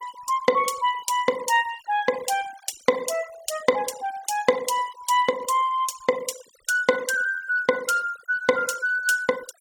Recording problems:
denoising artefacts; signal-to-artefact ratio 19 dB

